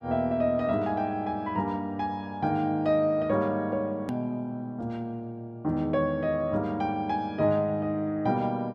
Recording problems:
hard cut with a click; at 4 s

